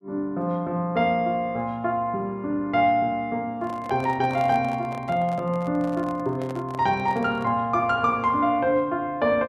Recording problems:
microphone handling noise; from 3.5 to 7.5 s; peak -10 dB vs average level

